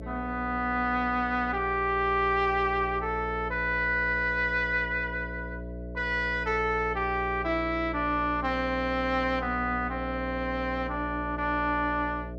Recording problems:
mains hum; 60 Hz, harmonics up to 660 Hz, SNR 11 dB

